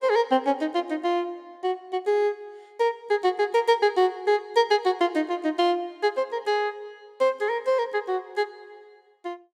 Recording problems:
none

